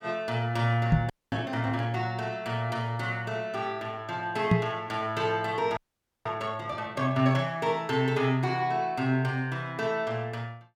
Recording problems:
knock on the microphone; at 1 s and at 4.5 s; peak +10 dB vs average level
audio freezing; at 1 s and at 6 s

